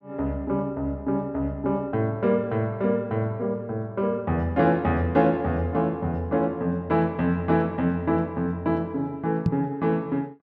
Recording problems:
knock on the microphone; at 9.5 s; peak +6 dB vs average level

